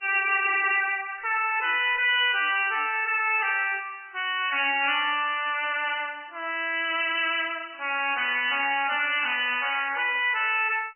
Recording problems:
lossy compression; MP3, log-spectral distance 8 dB, nothing above 2.7 kHz
distortion; soft clipping, signal-to-distortion ratio 7 dB

